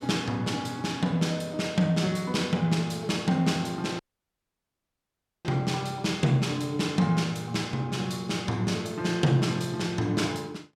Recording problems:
dropout; at 4 s for 1.5 s

